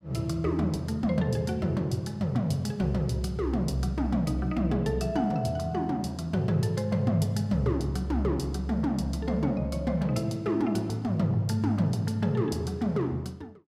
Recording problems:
none

